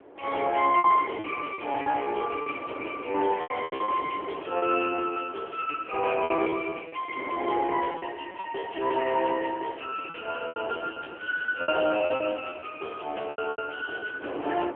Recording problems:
telephone audio; 260 Hz to 3.3 kHz, AMR-NB
wind noise; below 750 Hz, SNR 13 dB
packet loss; 13% of the sound replaced, filled with repeated pitch periods

